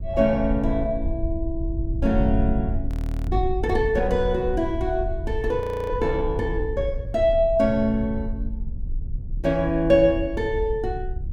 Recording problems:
wind on the microphone; below 76 Hz, SNR 6 dB
audio freezing; at 3 s and at 5.5 s

